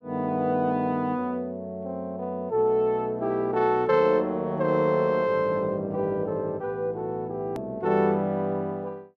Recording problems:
hard cut with a click; at 7.5 s

